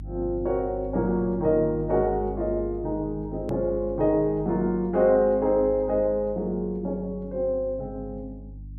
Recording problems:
hum; 50 Hz, harmonics up to 300 Hz, SNR 15 dB
hard cut with a click; at 3.5 s

